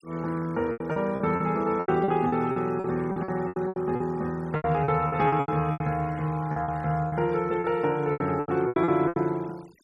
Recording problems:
noise reduction artefacts; signal-to-artefact ratio 25 dB
lost packets; 17% of the sound replaced, filled with repeated pitch periods

